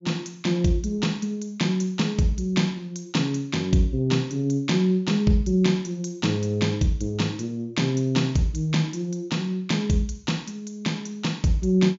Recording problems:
treble cut off; nothing above 7.3 kHz

